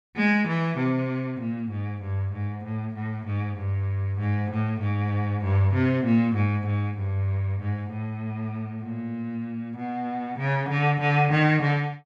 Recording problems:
none

